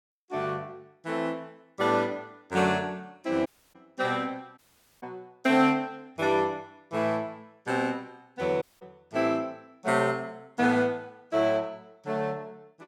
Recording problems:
audio cutting out; at 3.5 s, at 4.5 s and at 8.5 s

